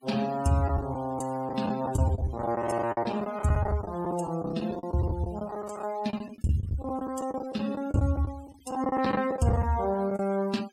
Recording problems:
noise reduction artefacts; signal-to-artefact ratio 21 dB
packet loss; 15% of the sound replaced, filled with the last packet

